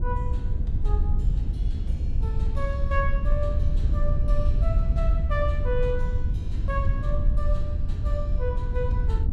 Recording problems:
wind noise; below 76 Hz, SNR -7 dB

